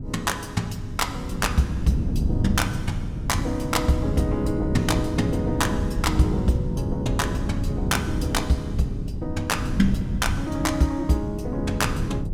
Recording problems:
wind noise; below 180 Hz, SNR 3 dB

